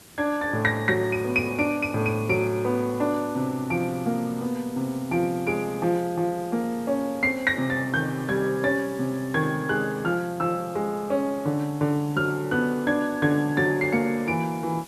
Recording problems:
hiss; SNR 21 dB

